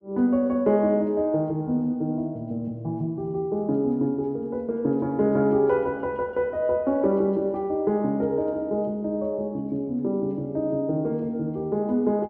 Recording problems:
none

